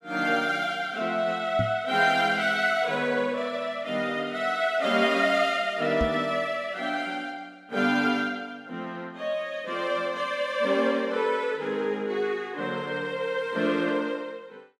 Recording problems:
microphone thump; at 1.5 s and at 6 s; peak 0 dB vs average level

